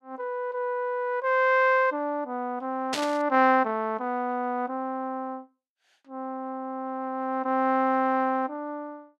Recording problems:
burst of static; at 3 s; peak +1 dB vs average level

